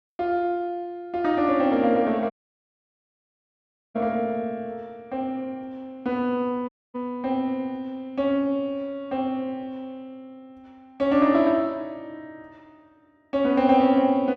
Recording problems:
audio cutting out; at 2.5 s for 1.5 s and at 6.5 s

